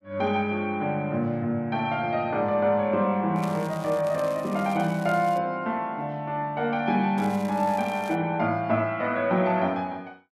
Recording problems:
crackle; from 3.5 to 5.5 s and at 7 s; loose cable, SNR 21 dB

